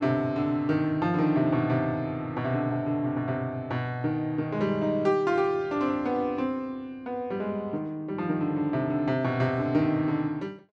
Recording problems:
none

